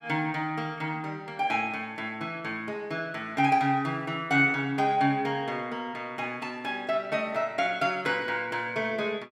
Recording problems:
none

